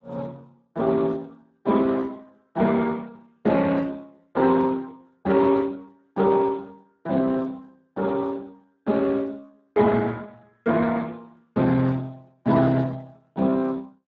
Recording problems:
codec artefacts; Speex, log-spectral distance 3 dB

